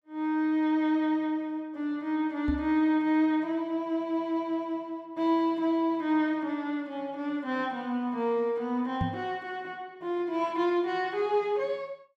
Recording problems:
microphone thump; at 2.5 s and at 9 s; peak +2 dB vs average level

